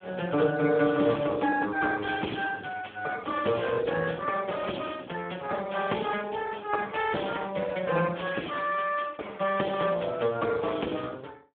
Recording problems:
telephone audio; 220 Hz to 2.8 kHz, Speex

